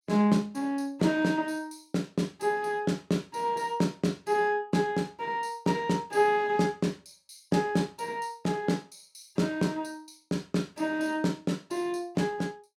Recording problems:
none

